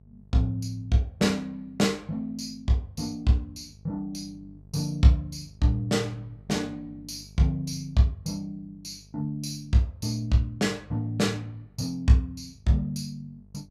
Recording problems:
hum; 50 Hz, harmonics up to 650 Hz, SNR 25 dB

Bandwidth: 15.5 kHz